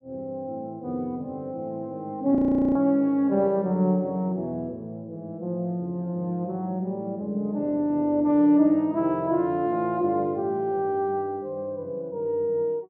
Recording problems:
frozen audio; at 2.5 s

